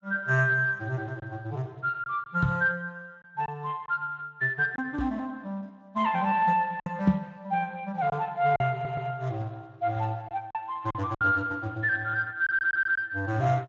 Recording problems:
codec artefacts; Speex, log-spectral distance 2 dB
lost packets; 3% of the sound replaced, filled with silence
knock on the microphone; at 2.5 s, at 5 s and at 7 s; peak +7 dB vs average level
audio stuttering; at 8.5 s and at 12 s

